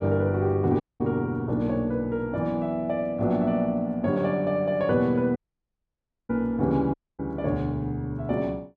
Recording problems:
dropout; at 1 s, at 5.5 s for 1 s and at 7 s

